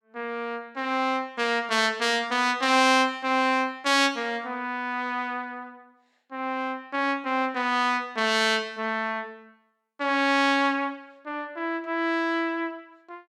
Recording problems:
none

